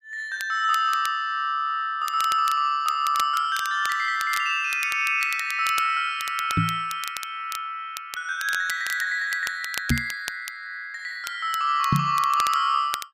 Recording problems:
crackling; vinyl, SNR 13 dB
knock on the microphone; at 6.5 s, at 10 s and at 12 s; peak +5 dB vs average level

